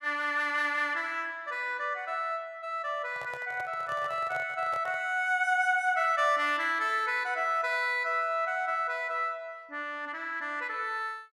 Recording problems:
microphone handling noise; from 3 to 5 s; peak -10 dB vs average level

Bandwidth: 14.5 kHz